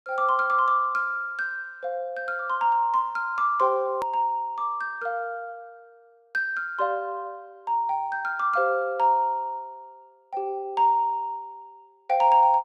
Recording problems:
click at an edit; at 4 s

